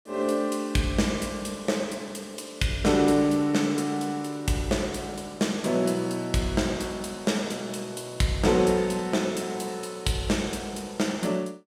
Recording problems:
none

